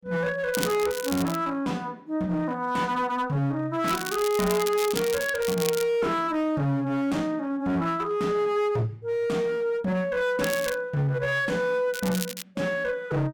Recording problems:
distortion; hard clipping, uneven, signal-to-distortion ratio 10 dB
crackle; 4 times, first at 0.5 s; loose cable, SNR 9 dB

